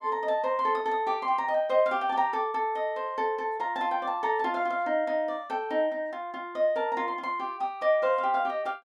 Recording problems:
none

